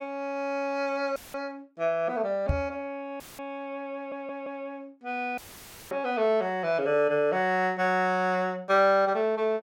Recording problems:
dropout; at 1 s, at 3 s and at 5.5 s for 0.5 s; filled with static
knock on the microphone; at 2.5 s and at 6 s; peak +4 dB vs average level
audio stuttering; at 4 s

